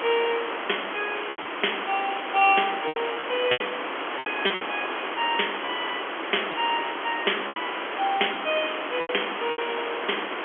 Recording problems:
phone line; 280 Hz to 3.4 kHz, G.711
background hiss; SNR 3 dB
lost packets; 8% of the sound replaced, filled with repeated pitch periods

